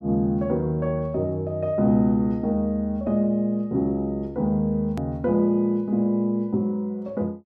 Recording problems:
edit click; at 5 s

